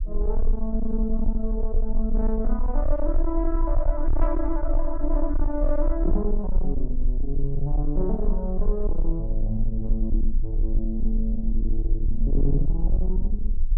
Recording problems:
distortion; soft clipping, signal-to-distortion ratio 12 dB
low-frequency rumble; below 36 Hz, strongest tone 20 Hz, SNR -1 dB

